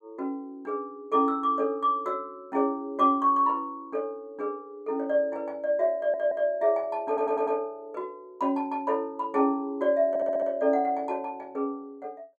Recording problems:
stutter; at 6 s, at 7 s and at 10 s

